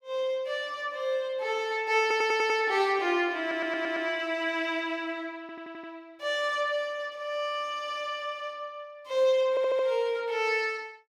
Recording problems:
stutter; 4 times, first at 2 s

